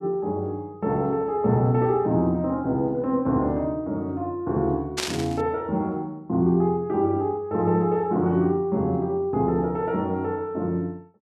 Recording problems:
static burst; at 5 s; peak +2 dB vs average level

